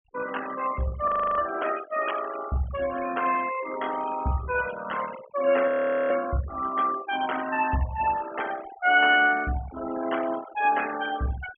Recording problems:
treble missing; nothing above 3.3 kHz
denoising artefacts; signal-to-artefact ratio 14 dB
audio freezing; at 1 s and at 5.5 s

